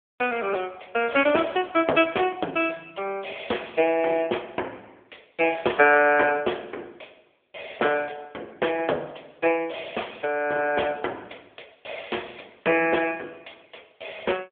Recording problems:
telephone audio; 300 Hz to 3.4 kHz, AMR-NB

